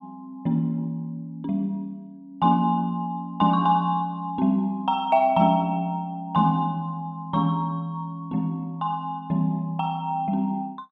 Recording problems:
none

